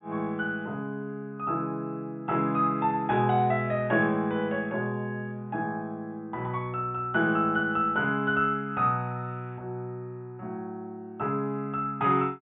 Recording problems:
treble missing; nothing above 4 kHz

